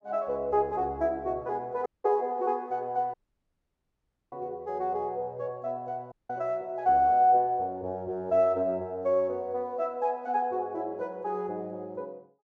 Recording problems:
audio cutting out; at 2 s, at 3 s for 1 s and at 6 s

